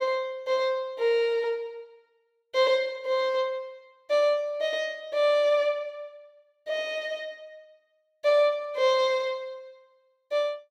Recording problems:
none

